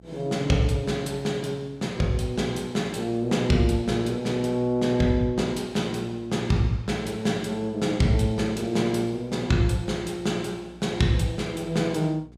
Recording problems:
hum; 60 Hz, harmonics up to 780 Hz, SNR 24 dB

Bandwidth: 15 kHz